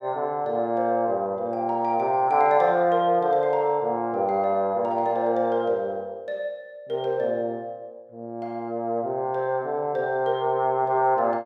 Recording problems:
none

